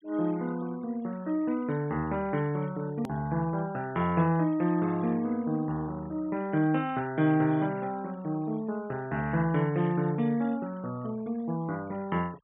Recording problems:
treble cut off; nothing above 4 kHz
denoising artefacts; signal-to-artefact ratio 23 dB
click at an edit; at 3 s

